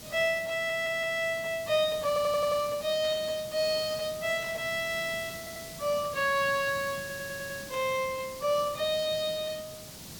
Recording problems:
background hiss; SNR 13 dB
stutter; 4 times, first at 0.5 s
static burst; at 3 s, at 4.5 s and at 7.5 s; peak -13 dB vs average level

